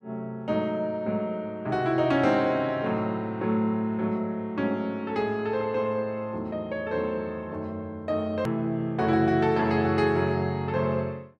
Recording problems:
click at an edit; at 8.5 s

